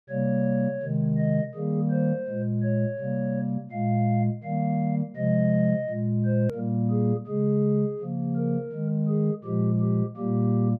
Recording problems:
hard cut with a click; at 6.5 s

